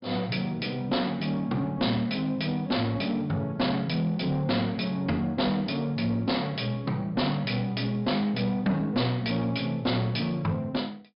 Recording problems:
low-pass filter; nothing above 5.5 kHz
distortion; soft clipping, signal-to-distortion ratio 10 dB

